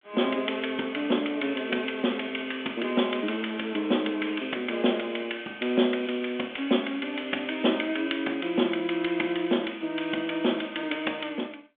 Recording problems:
phone line; 190 Hz to 3.5 kHz, G.726

